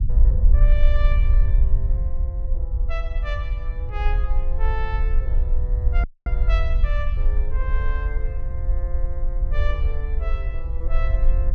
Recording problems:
rumble; below 54 Hz, SNR -12 dB
audio cutting out; at 6 s

